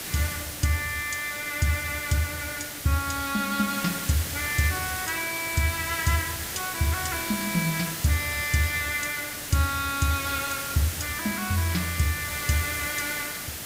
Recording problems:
background hiss; slope -1 dB per octave, SNR 4 dB

